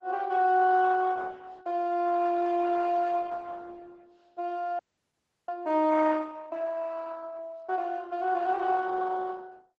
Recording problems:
codec artefacts; Opus, log-spectral distance 3 dB, nothing above 7.6 kHz
frozen audio; at 5 s for 0.5 s

